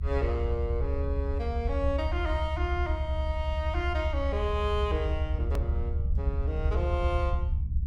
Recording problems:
rumble; below 74 Hz, SNR -3 dB
click at an edit; at 5.5 s

